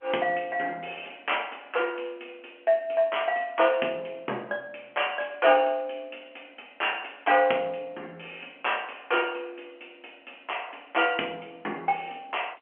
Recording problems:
phone line; 240 Hz to 3.2 kHz, G.711

